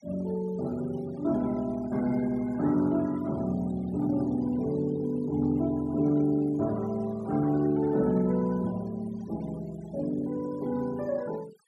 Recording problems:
noise reduction artefacts; signal-to-artefact ratio 22 dB

